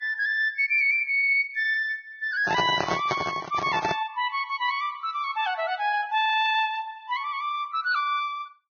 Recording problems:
lossy codec; Vorbis, log-spectral distance 2 dB, nothing above 5.3 kHz
microphone handling noise; from 2.5 to 4 s; peak +3 dB vs average level

